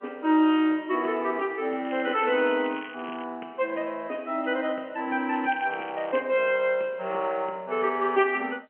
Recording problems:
telephone audio; 220 Hz to 3.3 kHz, G.711
crackling; from 2 to 3 s and at 5.5 s; loose cable, SNR 20 dB

